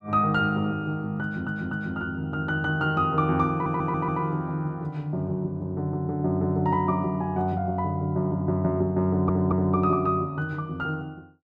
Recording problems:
audio stuttering; at 1 s, at 3.5 s and at 9 s

